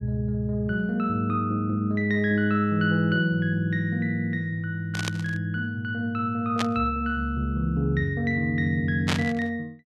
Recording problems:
static burst; at 5 s, at 6.5 s and at 9 s; peak +2 dB vs average level

